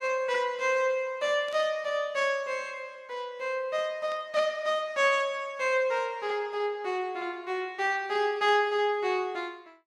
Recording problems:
burst of static; at 1.5 s, at 4 s and at 8.5 s; peak -15 dB vs average level

